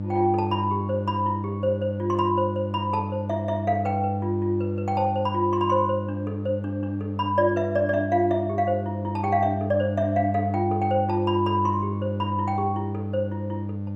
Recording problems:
mains hum; 50 Hz, harmonics up to 600 Hz, SNR 4 dB

